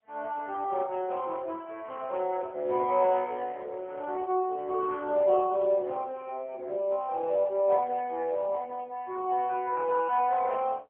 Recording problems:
telephone audio; 300 Hz to 3.2 kHz, AMR-NB

